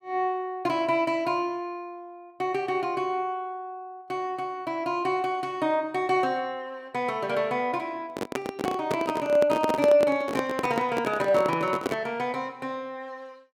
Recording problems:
microphone handling noise; from 8 to 12 s; peak +3 dB vs average level

